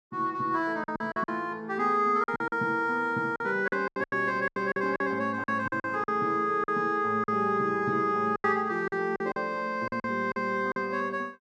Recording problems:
packet loss; 11% of the sound replaced, filled with silence

